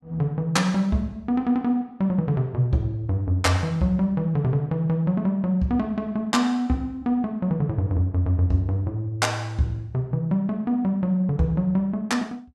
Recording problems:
none

